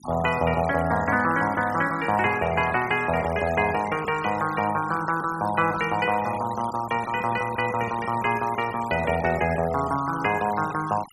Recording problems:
noise reduction artefacts; signal-to-artefact ratio 15 dB

